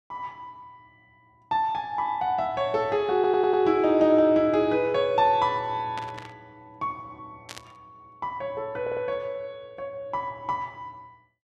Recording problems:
audio stuttering; at 3 s and at 9 s
static burst; at 6 s and at 7.5 s; peak -9 dB vs average level

